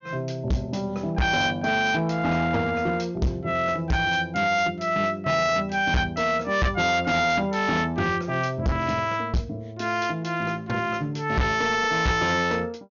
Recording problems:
treble cut off; nothing above 6.8 kHz
distorted audio; hard clipping, uneven, signal-to-distortion ratio 7 dB

